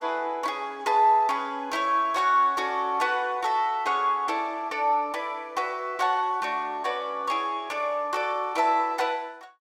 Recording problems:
none

